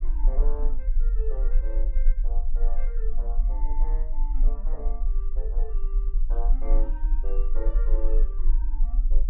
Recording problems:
rumble; below 34 Hz, strongest tone 20 Hz, SNR -14 dB

